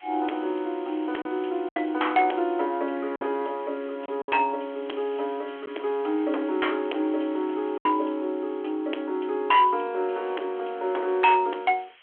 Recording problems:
telephone audio; 260 Hz to 2.7 kHz, G.726
distorted audio; hard clipping, uneven, signal-to-distortion ratio 10 dB
hiss; SNR 26 dB
lost packets; 3% of the sound replaced, filled with silence

